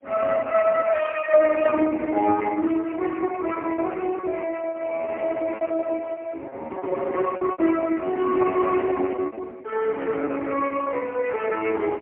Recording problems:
telephone audio; 260 Hz to 3.1 kHz, AMR-NB, then MP3
lost packets; 17% of the sound replaced, filled with repeated pitch periods

